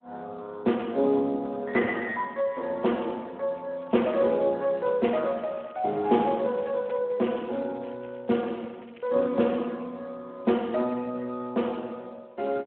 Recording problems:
telephone audio; 190 Hz to 3.2 kHz, Speex
crackle; from 4 to 9.5 s; loose cable, SNR 28 dB

